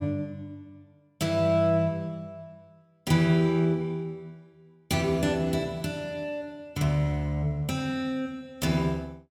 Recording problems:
none

